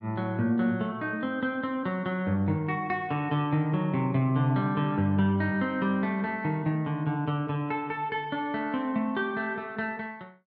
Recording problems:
none

